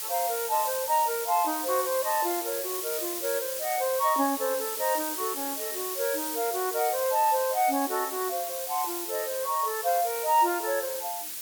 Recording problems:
hiss; slope +2 dB per octave, SNR 3 dB

